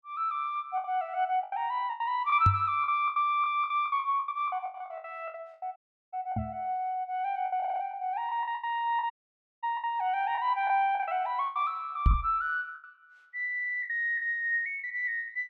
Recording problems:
lost packets; 13% of the sound replaced, filled with the last packet
knock on the microphone; at 2.5 s, at 6.5 s and at 12 s; peak +9 dB vs average level
audio cutting out; at 6 s and at 9 s for 0.5 s
audio stuttering; at 7.5 s and at 14 s

